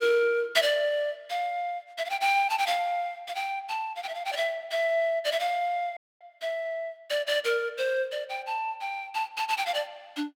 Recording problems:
dropout; at 6 s

